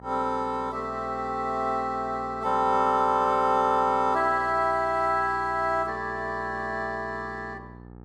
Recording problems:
mains hum; 60 Hz, harmonics up to 1.4 kHz, SNR 20 dB

